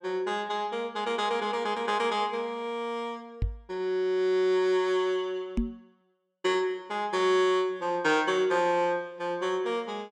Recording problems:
microphone bump; at 3.5 s and at 5.5 s; peak +3 dB vs average level

